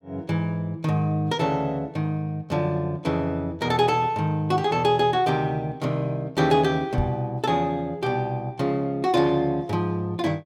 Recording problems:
microphone thump; at 7 s; peak +3 dB vs average level

